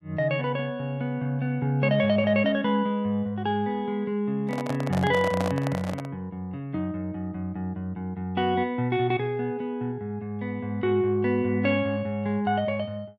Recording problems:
microphone handling noise; from 4.5 to 6 s; peak 0 dB vs average level

